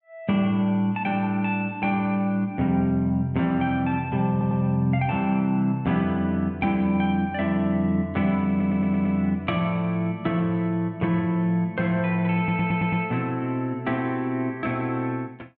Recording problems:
stutter; at 4.5 s, at 8.5 s and at 12 s

